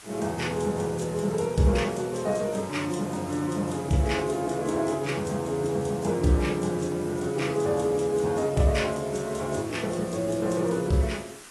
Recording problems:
lossy codec; AAC, log-spectral distance 7 dB, nothing above 11 kHz
background hiss; slope -1 dB per octave, SNR 17 dB

